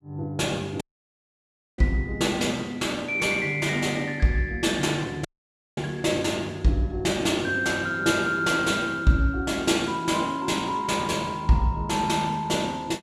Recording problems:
dropout; at 1 s for 1 s and at 5.5 s for 0.5 s

